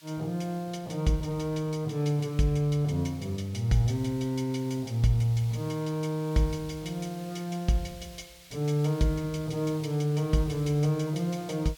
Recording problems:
background hiss; slope +3 dB per octave, SNR 22 dB

